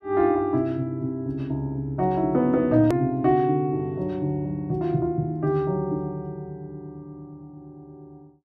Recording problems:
edit click; at 3 s

